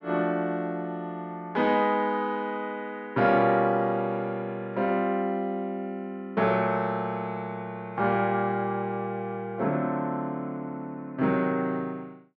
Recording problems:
none

